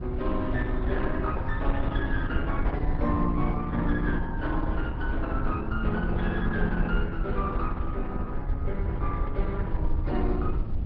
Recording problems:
treble missing; nothing above 5.5 kHz
lossy compression; AAC, then Opus, log-spectral distance 2 dB
low-frequency rumble; below 76 Hz, SNR 0 dB

